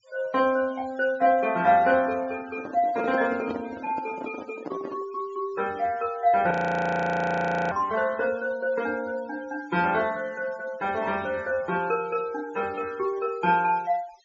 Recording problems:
low-pass filter; nothing above 7.2 kHz
denoising artefacts; signal-to-artefact ratio 20 dB
microphone handling noise; from 2.5 to 5 s; peak -4 dB vs average level
frozen audio; at 6.5 s for 1 s

